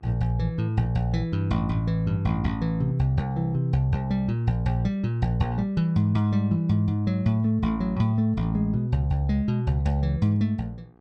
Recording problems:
hum; 60 Hz, harmonics up to 1.7 kHz, SNR 32 dB

